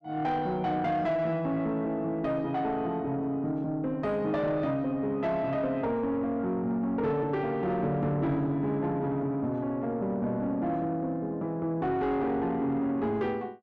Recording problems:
distortion; soft clipping, signal-to-distortion ratio 12 dB

